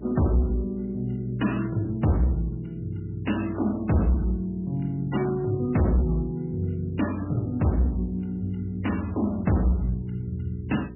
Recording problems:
codec artefacts; MP3, log-spectral distance 3 dB, nothing above 2.9 kHz
distortion; hard clipping, signal-to-distortion ratio 11 dB
hum; 60 Hz, harmonics up to 420 Hz, SNR 15 dB

